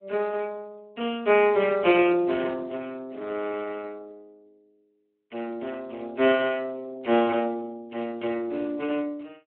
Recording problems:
phone line; 300 Hz to 3.2 kHz, Speex

